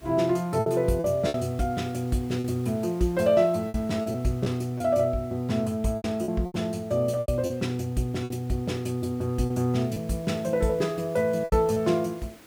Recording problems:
background hiss; slope -4 dB per octave, SNR 24 dB
lost packets; 7% of the sound replaced, filled with repeated pitch periods

